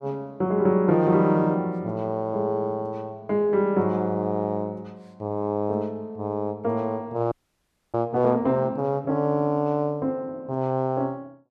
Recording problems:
audio freezing; at 7.5 s for 0.5 s

